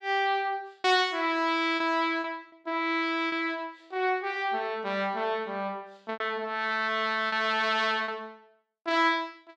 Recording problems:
lost packets; 4% of the sound replaced, filled with repeated pitch periods

